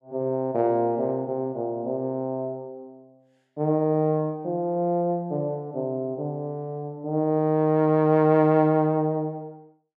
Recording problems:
none

